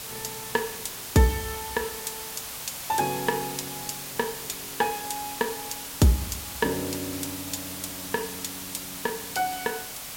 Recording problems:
background hiss; slope 0 dB per octave, SNR 5 dB

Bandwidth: 16.5 kHz